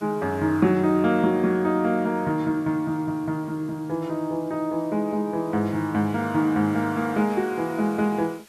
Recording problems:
hiss; slope 0 dB per octave, SNR 27 dB

